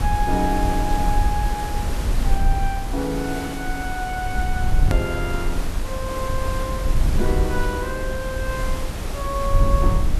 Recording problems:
background hiss; slope -5 dB per octave, SNR 6 dB
low-frequency rumble; below 64 Hz, SNR -1 dB
hard cut with a click; at 5 s

